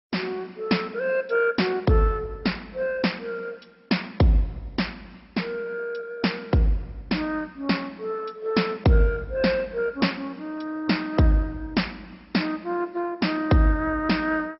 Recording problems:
lossy compression; MP2, log-spectral distance 3 dB, nothing above 5.5 kHz

